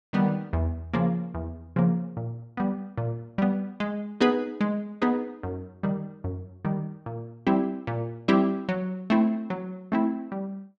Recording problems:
none

